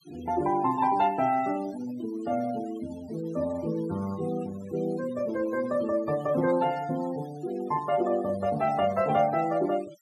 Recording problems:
noise reduction artefacts; signal-to-artefact ratio 18 dB

